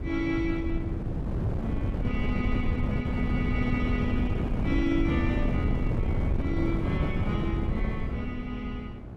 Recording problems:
hum; 60 Hz, harmonics up to 1.1 kHz, SNR 16 dB
wind noise; below 190 Hz, SNR -3 dB

